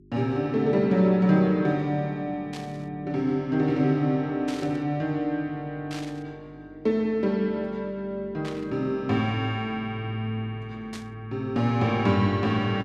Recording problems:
hum; 50 Hz, harmonics up to 400 Hz, SNR 25 dB
static burst; 5 times, first at 2.5 s; peak -9 dB vs average level

